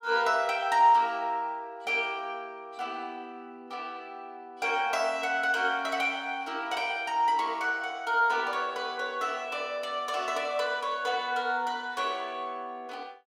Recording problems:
none

